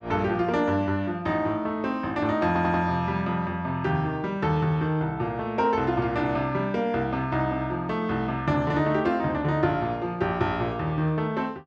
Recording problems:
audio stuttering; at 2.5 s

